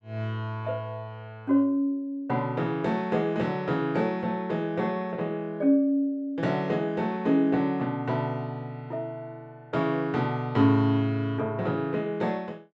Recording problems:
none

